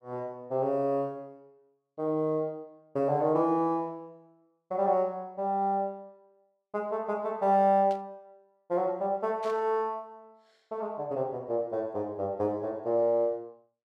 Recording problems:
burst of static; at 8 s and at 9.5 s; peak -14 dB vs average level

